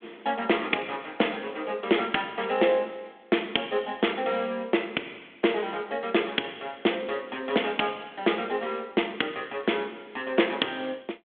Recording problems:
telephone audio; 220 Hz to 3.5 kHz, G.726

